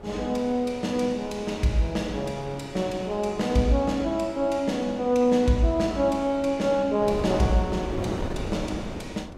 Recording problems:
wind on the microphone; below 530 Hz, SNR 12 dB

